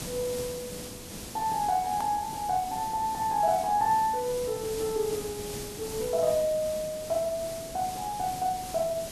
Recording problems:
hiss; SNR 10 dB
hard cut with a click; at 2 s

